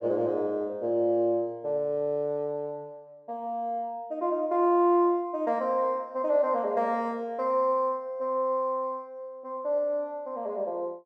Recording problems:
none

